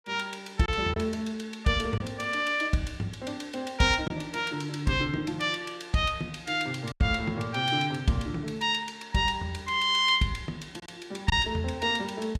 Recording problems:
lost packets; 1.8% of the sound replaced, filled with silence

